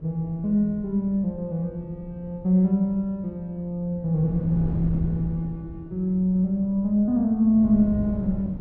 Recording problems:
wind on the microphone; below 190 Hz, SNR 13 dB

